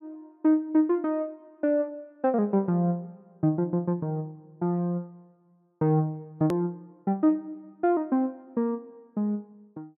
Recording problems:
click at an edit; at 6.5 s

